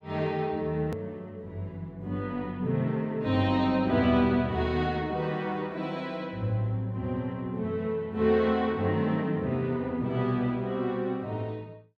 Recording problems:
click at an edit; at 1 s

